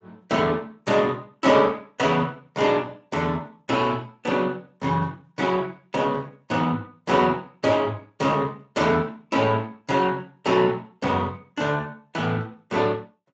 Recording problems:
lossy codec; Speex, log-spectral distance 3 dB, nothing above 7.3 kHz

